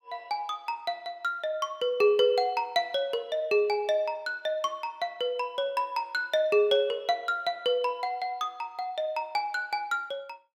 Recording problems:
none

